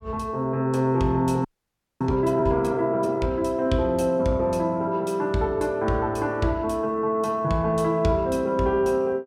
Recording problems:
audio freezing; at 1.5 s for 0.5 s

